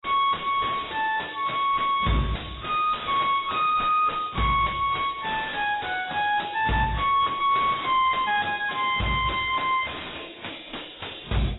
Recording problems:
lossy compression; AAC, then AAC, log-spectral distance 9 dB, nothing above 3.8 kHz
distorted audio; soft clipping, signal-to-distortion ratio 6 dB

